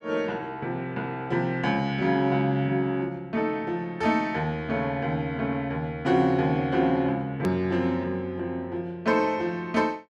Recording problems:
click at an edit; at 7.5 s

